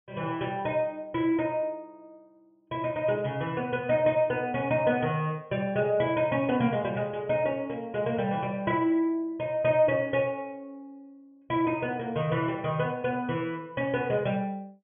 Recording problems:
treble missing; nothing above 3.4 kHz

